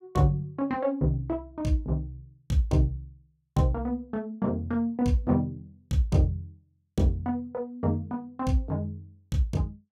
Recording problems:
none

